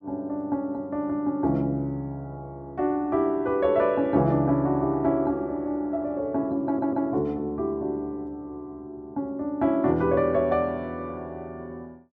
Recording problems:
stutter; at 6.5 s

